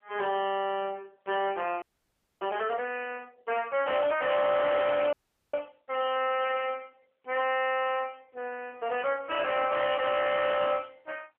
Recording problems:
telephone audio; 320 Hz to 2.6 kHz, AMR-NB
distorted audio; soft clipping, signal-to-distortion ratio 6 dB
audio freezing; at 2 s for 0.5 s and at 5 s

